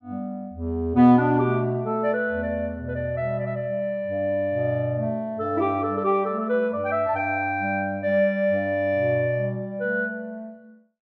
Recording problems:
none

